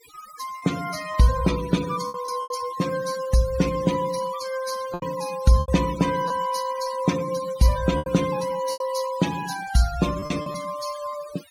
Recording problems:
noise reduction artefacts; signal-to-artefact ratio 13 dB
lost packets; 6% of the sound replaced, filled with repeated pitch periods

